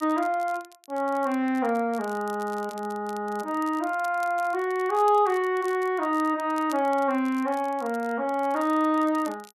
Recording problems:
crackling; vinyl, SNR 24 dB

